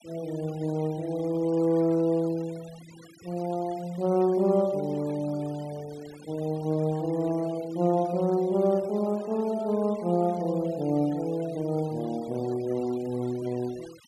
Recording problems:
noise reduction artefacts; signal-to-artefact ratio 22 dB

